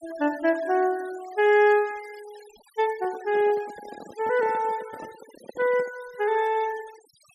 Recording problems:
noise reduction artefacts; signal-to-artefact ratio 22 dB
handling noise; from 3 to 6 s; peak -12 dB vs average level

